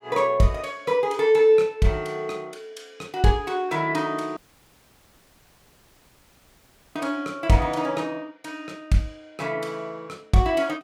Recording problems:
audio cutting out; at 4.5 s for 2.5 s

